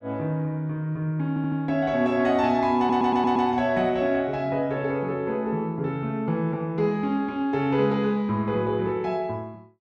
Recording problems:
audio stuttering; at 1.5 s and at 3 s

